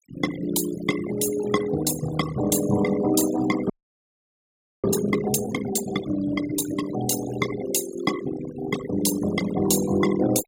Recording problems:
noise reduction artefacts; signal-to-artefact ratio 10 dB
frozen audio; at 3.5 s for 1 s

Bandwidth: 16 kHz